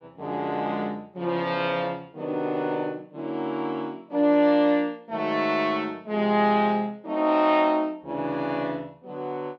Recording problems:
none

